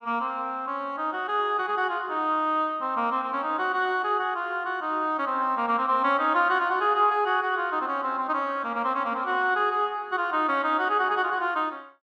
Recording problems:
none

